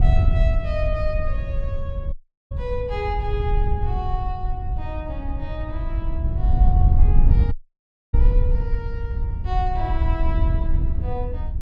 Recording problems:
wind on the microphone; below 74 Hz, SNR -8 dB
audio cutting out; at 2 s and at 7.5 s for 0.5 s

